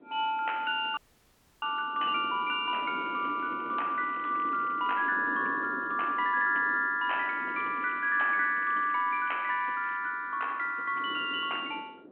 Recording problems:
phone line; 240 Hz to 3.2 kHz, G.726
wind on the microphone; below 450 Hz, SNR 17 dB
audio freezing; at 1 s for 0.5 s
crackling; from 3 to 5 s and from 7 to 10 s; loose cable, SNR 28 dB

